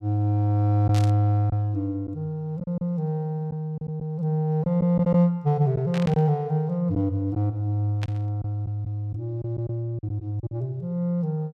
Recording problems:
lost packets; 5% of the sound replaced, filled with silence
static burst; at 1 s, at 6 s and at 8 s; peak -7 dB vs average level

